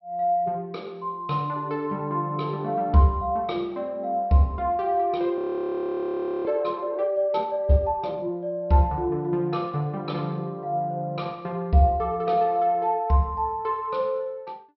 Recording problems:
treble missing; nothing above 5.6 kHz
audio freezing; at 5.5 s for 1 s

